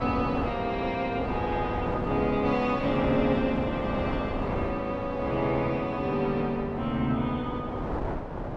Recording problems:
wind noise; below 730 Hz, SNR 5 dB

